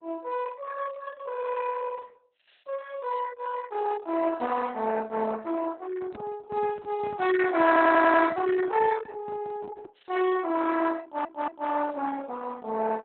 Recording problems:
lossy compression; Opus, log-spectral distance 4 dB, nothing above 4 kHz
microphone handling noise; from 6 to 10 s; peak -8 dB vs average level
stutter; at 7.5 s and at 11 s

